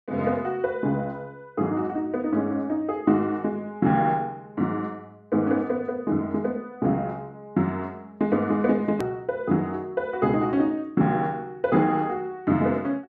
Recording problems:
click at an edit; at 9 s

